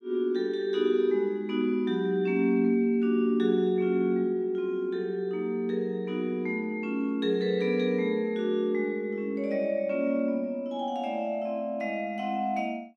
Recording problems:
none

